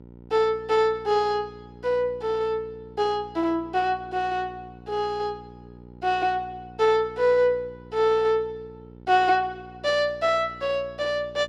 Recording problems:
hum; 60 Hz, harmonics up to 1 kHz, SNR 21 dB

